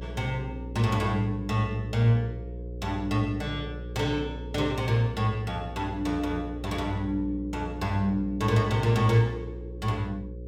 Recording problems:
electrical hum; 60 Hz, harmonics up to 540 Hz, SNR 10 dB

